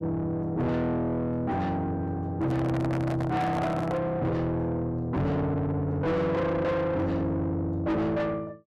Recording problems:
distorted audio; soft clipping, signal-to-distortion ratio 6 dB
handling noise; from 2.5 to 4 s; peak 0 dB vs average level

